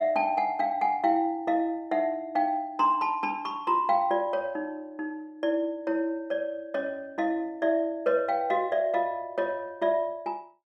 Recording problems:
none

